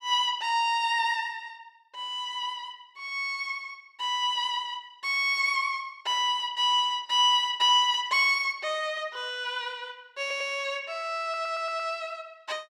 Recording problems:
stutter; at 10 s and at 11 s

